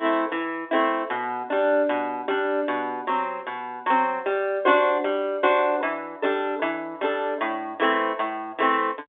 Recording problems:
phone line; 260 Hz to 3.8 kHz, G.711

